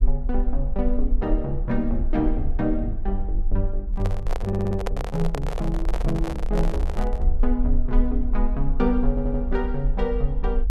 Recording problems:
low-frequency rumble; below 40 Hz, strongest tone 22 Hz, SNR 1 dB
microphone handling noise; from 4 to 7.5 s; peak +2 dB vs average level
audio stuttering; at 4.5 s and at 9 s

